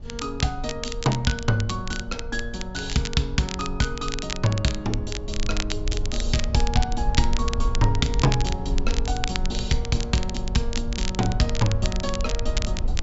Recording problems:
treble cut off; nothing above 8 kHz
rumble; below 58 Hz, strongest tone 20 Hz, SNR 4 dB
crackle; vinyl, SNR 8 dB

